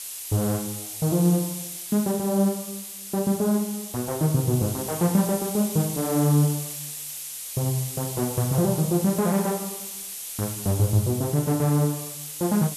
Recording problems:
hiss; SNR 8 dB

